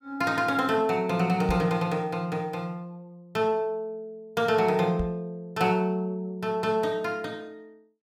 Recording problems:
knock on the microphone; at 1.5 s and at 5 s; peak -1 dB vs average level

